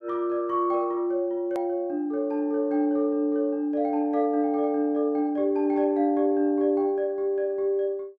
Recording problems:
hard cut with a click; at 1.5 s

